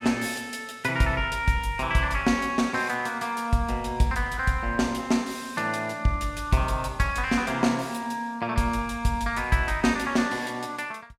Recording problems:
none

